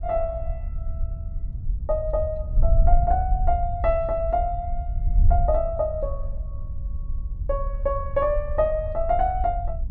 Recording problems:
wind on the microphone; below 62 Hz, SNR 2 dB

